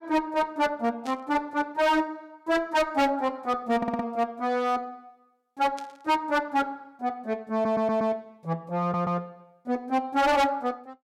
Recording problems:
distortion; hard clipping, signal-to-distortion ratio 7 dB
static burst; at 1 s and at 6 s; peak -11 dB vs average level
audio stuttering; at 4 s, at 7.5 s and at 9 s

